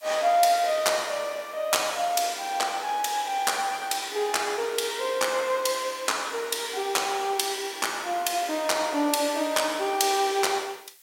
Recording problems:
hiss; slope +4 dB per octave, SNR 26 dB

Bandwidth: 16.5 kHz